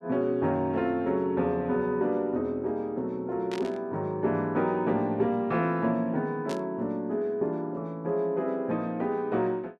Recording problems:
burst of static; at 3.5 s and at 6.5 s; peak -7 dB vs average level

